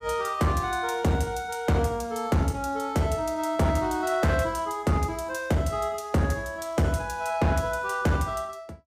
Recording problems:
distortion; hard clipping, signal-to-distortion ratio 12 dB

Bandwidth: 15.5 kHz